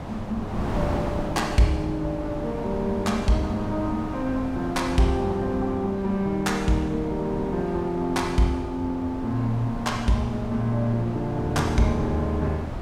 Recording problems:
wind noise; below 680 Hz, SNR 8 dB

